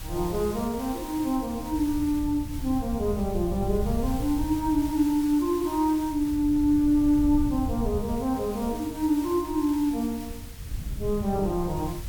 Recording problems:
background hiss; slope 0 dB per octave, SNR 18 dB
wind on the microphone; below 100 Hz, SNR 11 dB

